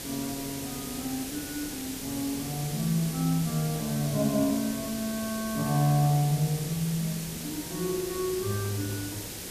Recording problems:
background hiss; SNR 6 dB

